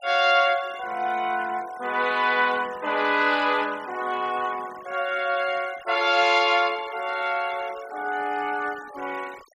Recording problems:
denoising artefacts; signal-to-artefact ratio 20 dB

